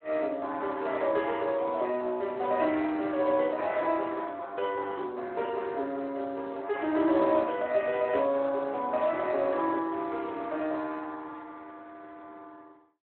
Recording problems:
phone line; 260 Hz to 3.3 kHz, Speex

